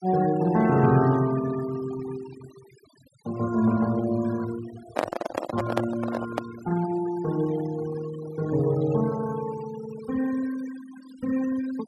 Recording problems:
denoising artefacts; signal-to-artefact ratio 16 dB
handling noise; from 5 to 6.5 s; peak +4 dB vs average level

